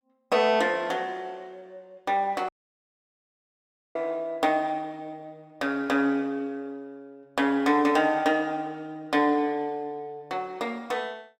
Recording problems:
audio cutting out; at 2.5 s for 1.5 s

